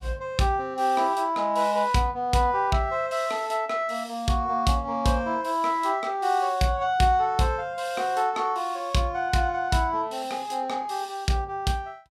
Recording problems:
none

